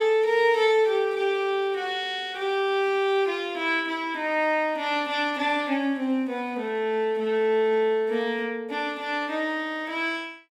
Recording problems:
none

